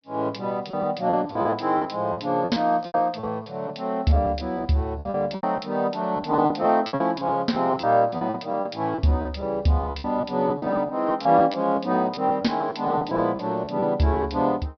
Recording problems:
treble missing; nothing above 5.5 kHz
lost packets; 13% of the sound replaced, filled with repeated pitch periods

